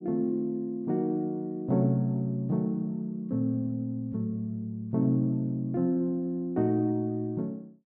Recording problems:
none

